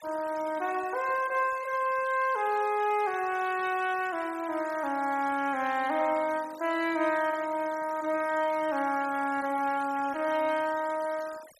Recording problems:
denoising artefacts; signal-to-artefact ratio 19 dB

